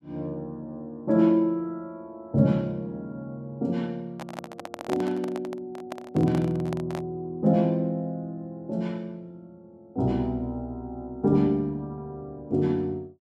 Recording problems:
microphone handling noise; from 4 to 7 s; peak -1 dB vs average level

